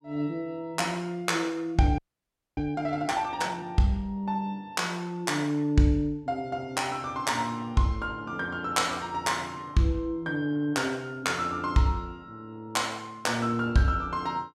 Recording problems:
frozen audio; at 2 s for 0.5 s

